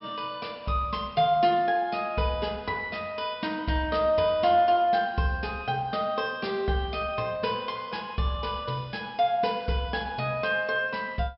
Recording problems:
treble cut off; nothing above 5.3 kHz

